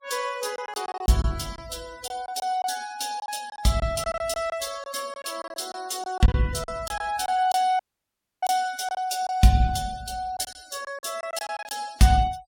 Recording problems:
noise reduction artefacts; signal-to-artefact ratio 19 dB
lost packets; 10% of the sound replaced, filled with silence
audio cutting out; at 8 s for 0.5 s

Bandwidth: 17 kHz